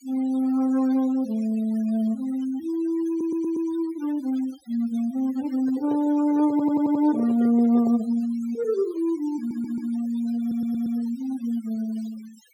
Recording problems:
noise reduction artefacts; signal-to-artefact ratio 21 dB
audio stuttering; 4 times, first at 3 s
microphone handling noise; from 5.5 to 8 s; peak -6 dB vs average level

